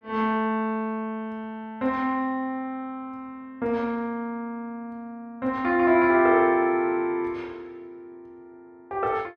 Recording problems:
none

